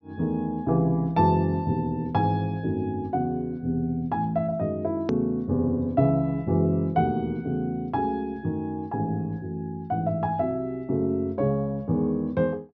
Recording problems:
treble cut off; nothing above 6.1 kHz
hard cut with a click; at 5 s

